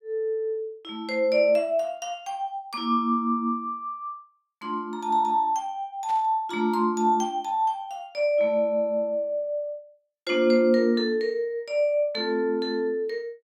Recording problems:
burst of static; at 6 s; peak -15 dB vs average level

